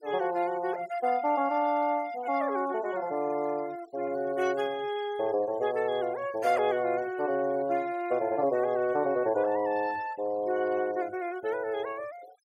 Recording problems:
noise reduction artefacts; signal-to-artefact ratio 23 dB

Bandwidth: 16 kHz